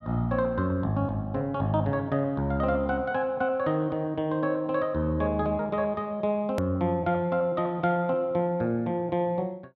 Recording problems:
low-pass filter; nothing above 7.1 kHz
hard cut with a click; at 6.5 s

